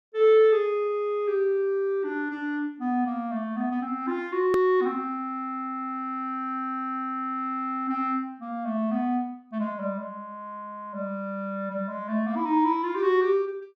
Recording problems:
hard cut with a click; at 4.5 s

